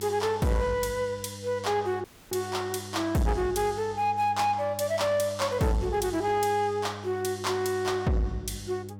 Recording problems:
distortion; soft clipping, signal-to-distortion ratio 10 dB
hum; 50 Hz, harmonics up to 800 Hz, SNR 15 dB
audio cutting out; at 2 s

